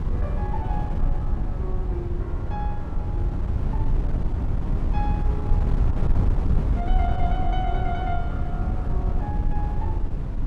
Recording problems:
wind noise; below 88 Hz, SNR -9 dB

